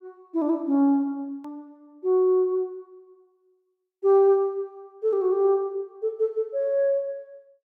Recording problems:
hard cut with a click; at 1.5 s

